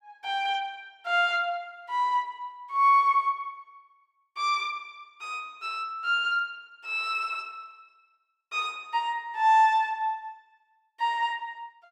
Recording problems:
none

